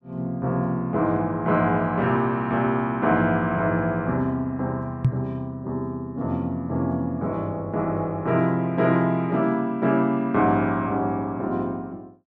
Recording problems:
knock on the microphone; at 5 s; peak +8 dB vs average level

